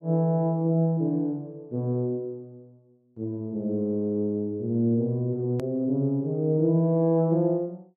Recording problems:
edit click; at 5.5 s

